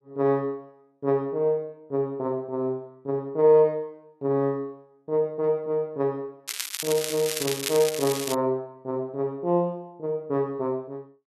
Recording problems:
crackle; from 6.5 to 8.5 s; loose cable, SNR 5 dB

